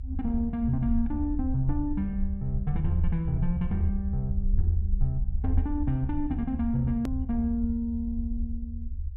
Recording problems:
low-frequency rumble; below 74 Hz, SNR 3 dB
click at an edit; at 7 s

